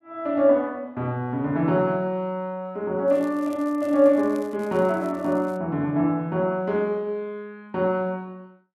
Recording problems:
crackling; from 3 to 5.5 s; loose cable, SNR 29 dB

